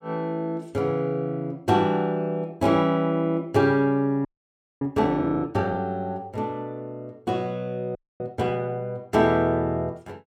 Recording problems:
frozen audio; at 4.5 s for 0.5 s and at 8 s

